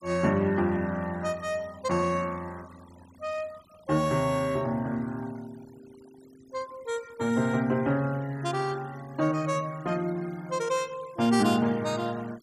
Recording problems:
noise reduction artefacts; signal-to-artefact ratio 23 dB

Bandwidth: 15 kHz